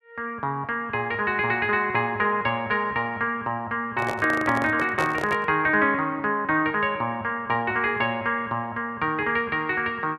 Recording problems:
handling noise; from 4 to 5.5 s; peak -1 dB vs average level

